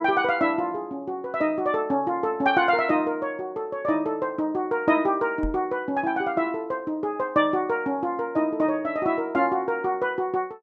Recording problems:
microphone thump; at 5.5 s; peak -3 dB vs average level

